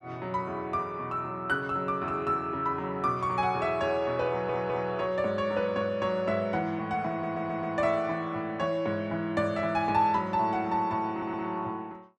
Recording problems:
audio stuttering; at 4.5 s, at 7 s and at 11 s

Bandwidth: 13 kHz